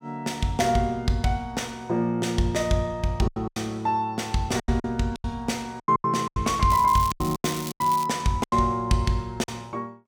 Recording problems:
packet loss; 10% of the sound replaced, filled with silence
crackle; from 6.5 to 8 s; loose cable, SNR 12 dB

